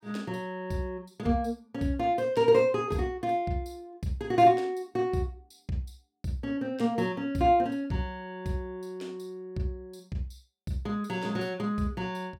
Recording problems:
none

